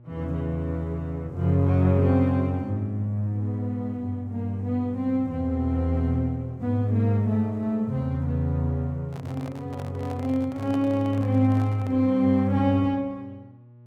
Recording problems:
hum; 60 Hz, harmonics up to 840 Hz, SNR 24 dB
microphone handling noise; from 9 to 12 s; peak -10 dB vs average level

